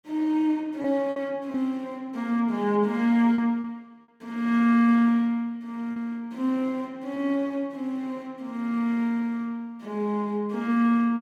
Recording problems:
lost packets; 2% of the sound replaced, filled with repeated pitch periods

